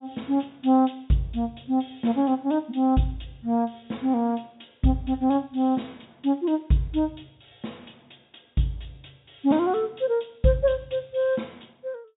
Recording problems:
treble cut off; nothing above 4 kHz

